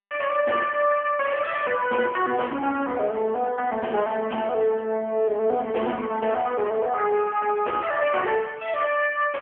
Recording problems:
telephone audio; 260 Hz to 3.3 kHz, AMR-NB

